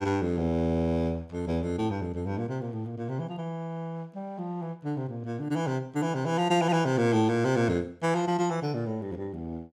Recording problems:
none

